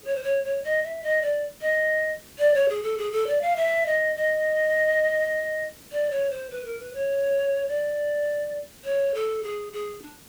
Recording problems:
background hiss; SNR 23 dB

